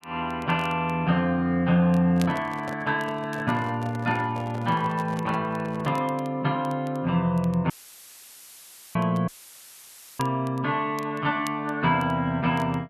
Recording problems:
crackle; vinyl, SNR 24 dB
handling noise; from 2 to 6 s; peak -8 dB vs average level
dropout; at 7.5 s for 1 s and at 9.5 s for 1 s; filled with static

